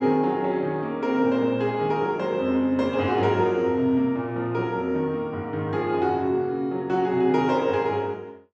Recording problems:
none

